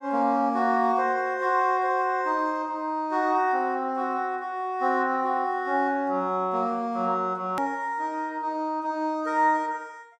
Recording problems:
hard cut with a click; at 7.5 s

